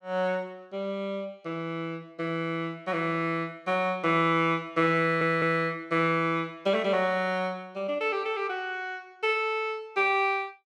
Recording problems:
audio stuttering; at 5 s

